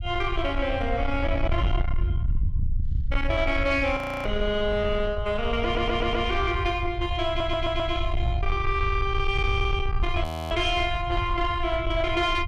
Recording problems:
distortion; soft clipping, signal-to-distortion ratio 11 dB
low-frequency rumble; below 80 Hz, SNR 4 dB
audio freezing; at 4 s and at 10 s
audio stuttering; at 5.5 s and at 7.5 s

